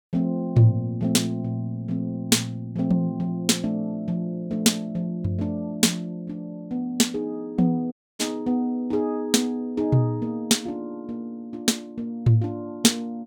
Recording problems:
dropout; at 8 s

